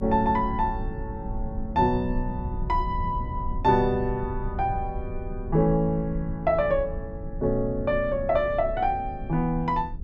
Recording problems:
low-frequency rumble; below 90 Hz, strongest tone 28 Hz, SNR 9 dB

